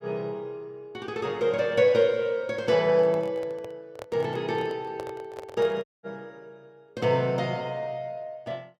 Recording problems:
microphone handling noise; from 3 to 6 s; peak -7 dB vs average level
dropout; at 6 s

